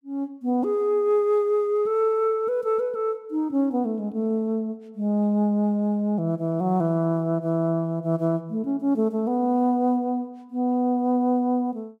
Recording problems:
none

